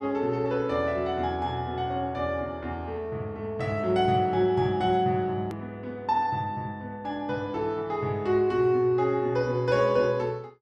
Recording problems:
edit click; at 5.5 s

